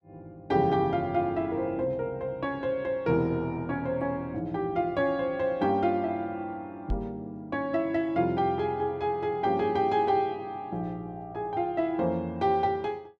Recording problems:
knock on the microphone; at 7 s; peak +1 dB vs average level

